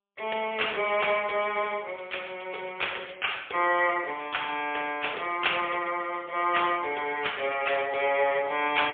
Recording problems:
telephone audio; 370 Hz to 3.5 kHz, AMR-NB, then MP3

